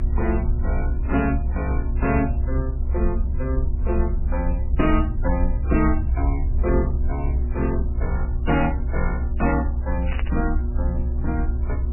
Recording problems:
lossy compression; MP3, then MP3, log-spectral distance 2 dB, nothing above 2.7 kHz
electrical hum; 60 Hz, harmonics up to 960 Hz, SNR 11 dB
hiss; SNR 23 dB
low-frequency rumble; below 66 Hz, SNR -2 dB
burst of static; at 10 s; peak -4 dB vs average level

